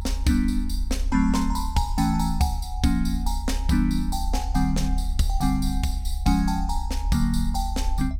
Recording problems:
low-frequency rumble; below 68 Hz, strongest tone 38 Hz, SNR 4 dB

